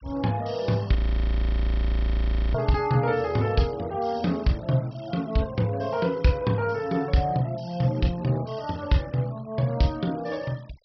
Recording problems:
treble missing; nothing above 5.5 kHz
noise reduction artefacts; signal-to-artefact ratio 25 dB
frozen audio; at 1 s for 1.5 s

